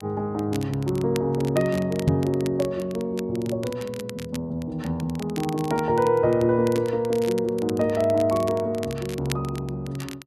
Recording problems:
crackle; vinyl, SNR 17 dB
microphone thump; at 2 s; peak +8 dB vs average level

